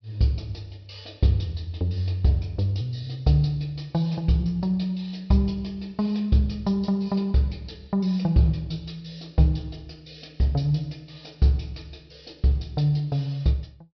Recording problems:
treble cut off; nothing above 5.5 kHz

